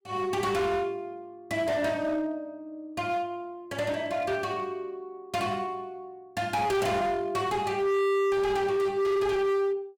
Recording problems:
distorted audio; hard clipping, signal-to-distortion ratio 6 dB

